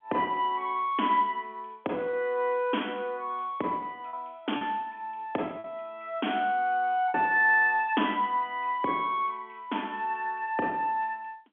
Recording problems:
phone line; 220 Hz to 3.4 kHz, G.711
lost packets; 2% of the sound replaced, filled with repeated pitch periods

